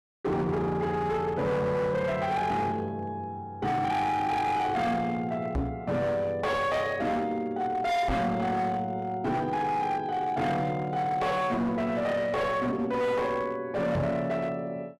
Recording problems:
distortion; hard clipping, signal-to-distortion ratio 8 dB
microphone thump; at 5.5 s, at 8 s and at 14 s; peak +4 dB vs average level

